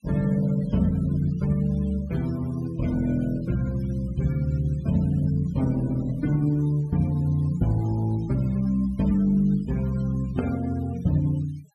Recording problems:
noise reduction artefacts; signal-to-artefact ratio 22 dB

